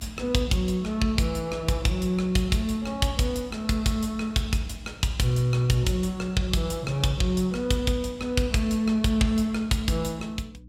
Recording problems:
hum; 60 Hz, harmonics up to 300 Hz, SNR 22 dB

